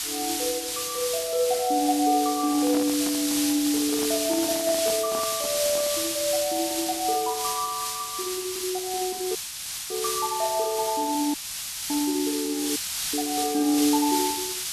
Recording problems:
hiss; slope +5 dB per octave, SNR 2 dB
microphone handling noise; from 2.5 to 6 s; peak -4 dB vs average level
audio cutting out; at 9.5 s for 0.5 s, at 11 s for 0.5 s and at 13 s

